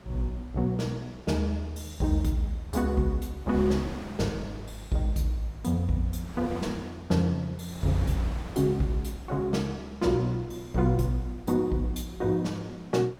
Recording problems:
wind noise; below 1 kHz, SNR 17 dB

